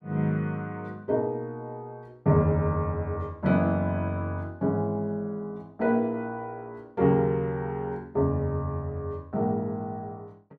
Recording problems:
none

